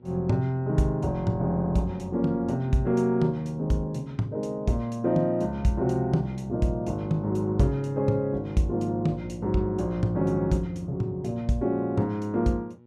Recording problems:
electrical hum; 60 Hz, harmonics up to 960 Hz, SNR 28 dB

